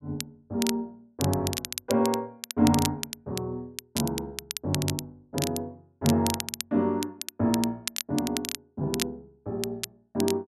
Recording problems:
crackling; vinyl, SNR 6 dB

